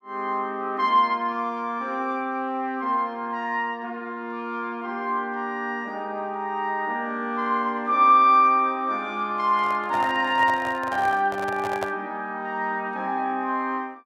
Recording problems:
handling noise; from 9.5 to 12 s; peak -2 dB vs average level

